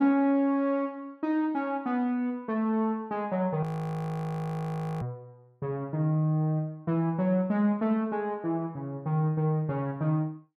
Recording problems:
audio freezing; at 3.5 s for 1.5 s

